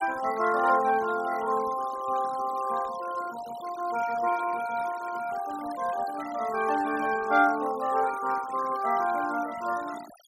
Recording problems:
noise reduction artefacts; signal-to-artefact ratio 16 dB

